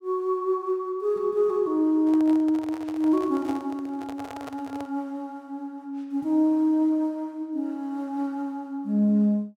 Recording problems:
microphone handling noise; from 2 to 5 s; peak -9 dB vs average level

